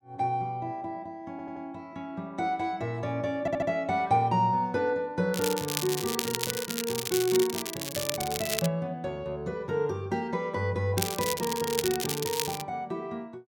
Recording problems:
audio stuttering; at 1.5 s and at 3.5 s
crackling; from 5.5 to 8.5 s and from 11 to 13 s; loose cable, SNR 2 dB

